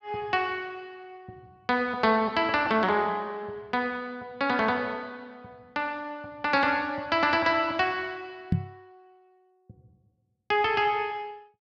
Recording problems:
microphone thump; at 8.5 s; peak +5 dB vs average level

